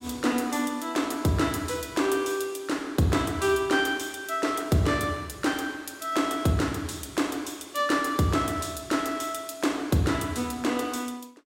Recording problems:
none

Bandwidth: 16 kHz